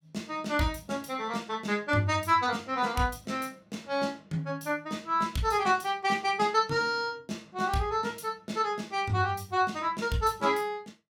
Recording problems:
none

